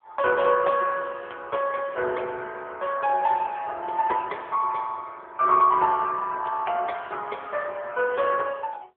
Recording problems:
phone line; 320 Hz to 2.2 kHz, AMR-NB

